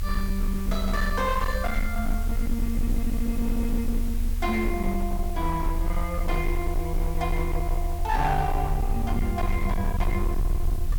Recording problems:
distorted audio; hard clipping, signal-to-distortion ratio 10 dB
hiss; slope 0 dB per octave, SNR 15 dB
low-frequency rumble; below 66 Hz, strongest tone 28 Hz, SNR 1 dB

